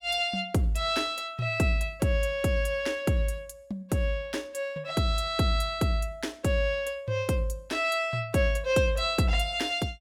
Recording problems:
none

